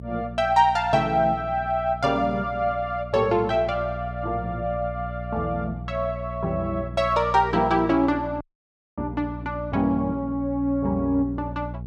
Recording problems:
hum; 60 Hz, harmonics up to 480 Hz, SNR 12 dB
audio cutting out; at 8.5 s for 0.5 s

